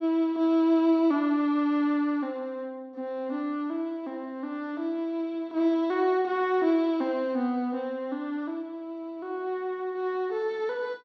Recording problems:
none

